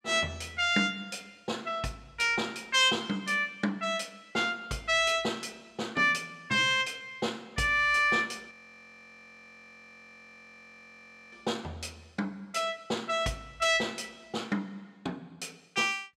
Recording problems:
frozen audio; at 8.5 s for 3 s

